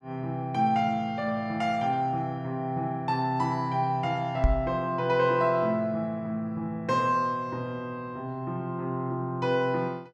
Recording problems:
knock on the microphone; at 4.5 s; peak +7 dB vs average level

